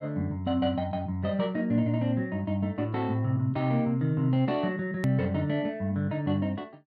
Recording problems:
edit click; at 5 s

